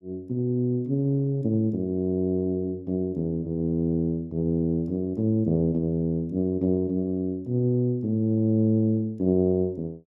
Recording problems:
none

